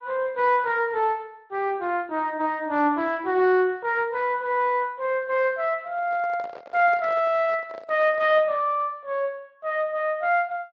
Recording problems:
lossy compression; Speex, then MP3, log-spectral distance 2 dB
microphone handling noise; from 6 to 8.5 s; peak -12 dB vs average level

